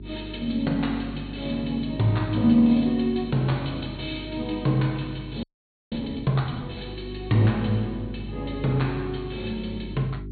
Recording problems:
treble cut off; nothing above 4.4 kHz
hum; 50 Hz, harmonics up to 400 Hz, SNR 13 dB
audio freezing; at 5.5 s

